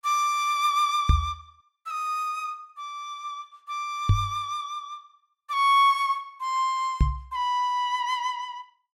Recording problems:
knock on the microphone; at 1 s, at 4 s and at 7 s; peak +9 dB vs average level

